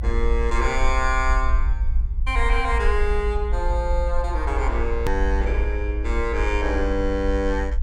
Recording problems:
rumble; below 56 Hz, SNR 0 dB
click at an edit; at 5 s

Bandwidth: 16 kHz